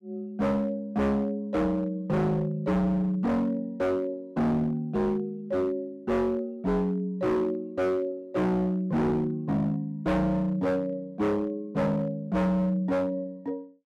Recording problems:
distortion; hard clipping, signal-to-distortion ratio 6 dB

